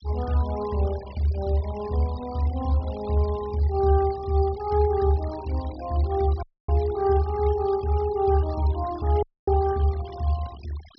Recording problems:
treble missing; nothing above 5.5 kHz
noise reduction artefacts; signal-to-artefact ratio 20 dB
dropout; at 6.5 s and at 9 s

